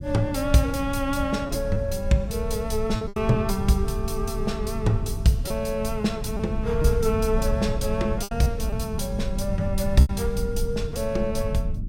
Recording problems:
low-frequency rumble; below 110 Hz, SNR 5 dB
packet loss; 4% of the sound replaced, filled with repeated pitch periods

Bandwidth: 16.5 kHz